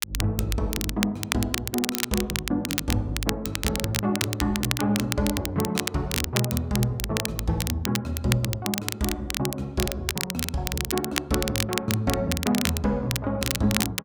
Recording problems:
crackling; vinyl, SNR 2 dB

